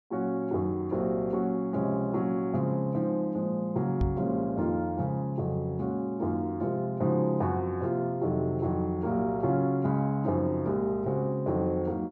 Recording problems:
knock on the microphone; at 4 s; peak +3 dB vs average level

